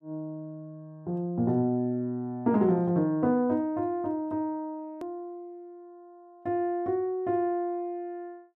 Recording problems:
hard cut with a click; at 5 s

